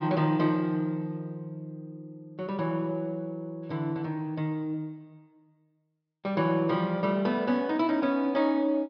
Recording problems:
low-pass filter; nothing above 5.5 kHz

